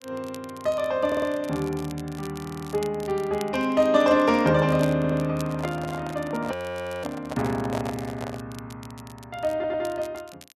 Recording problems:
crackling; vinyl, SNR 21 dB
stutter; 4 times, first at 1 s
microphone handling noise; from 5.5 to 8.5 s; peak -3 dB vs average level
audio freezing; at 6.5 s for 0.5 s

